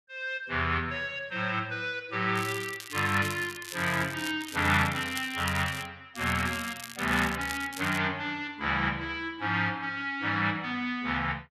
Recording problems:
crackling; from 2.5 to 4.5 s, from 4.5 to 6 s and from 6 to 8 s; loose cable, SNR 12 dB

